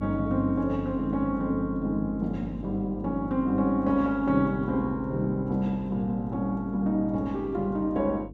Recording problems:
electrical hum; 50 Hz, harmonics up to 450 Hz, SNR 14 dB

